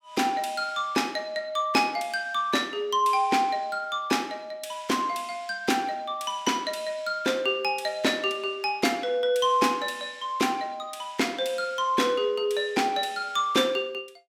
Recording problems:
none

